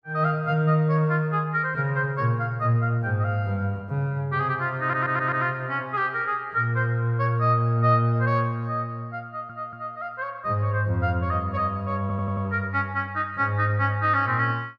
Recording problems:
audio stuttering; at 5 s, at 9.5 s and at 12 s

